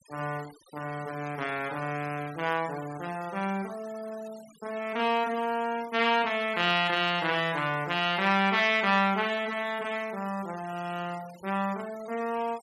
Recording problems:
noise reduction artefacts; signal-to-artefact ratio 19 dB

